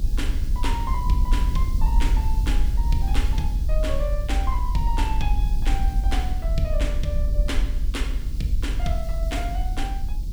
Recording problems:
background hiss; SNR 16 dB
rumble; below 58 Hz, SNR -6 dB

